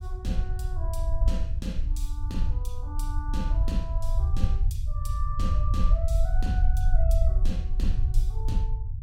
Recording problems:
low-frequency rumble; below 64 Hz, SNR -10 dB

